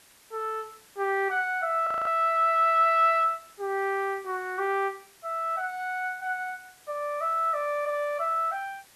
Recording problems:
background hiss; slope 0 dB per octave, SNR 27 dB
frozen audio; at 2 s

